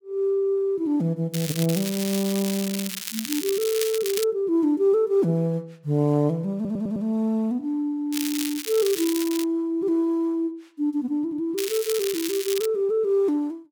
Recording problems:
crackling; from 1.5 to 4 s, from 8 to 9.5 s and from 12 to 13 s; loose cable, SNR 7 dB
audio stuttering; at 6.5 s

